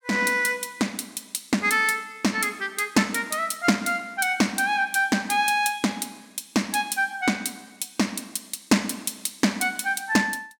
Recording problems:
none

